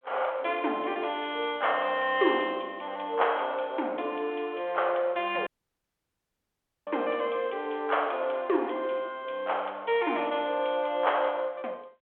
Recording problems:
phone line; 320 Hz to 3.4 kHz, G.726
dropout; at 5.5 s for 1.5 s

